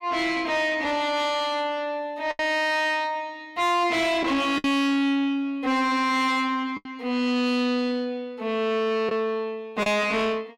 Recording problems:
distorted audio; soft clipping, signal-to-distortion ratio 7 dB
lost packets; 3% of the sound replaced, filled with the last packet

